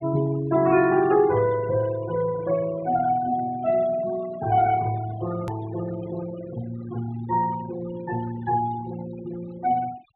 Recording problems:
treble missing; nothing above 4 kHz
denoising artefacts; signal-to-artefact ratio 17 dB
edit click; at 5.5 s

